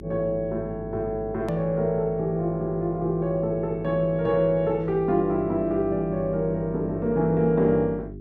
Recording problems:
electrical hum; 50 Hz, harmonics up to 400 Hz, SNR 15 dB
click at an edit; at 1.5 s

